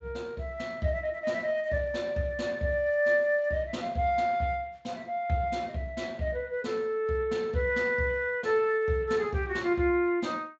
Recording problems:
lossy codec; Speex, log-spectral distance 2 dB

